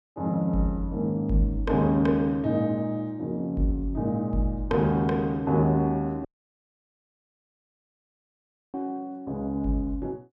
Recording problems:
dropout; at 6.5 s for 2.5 s

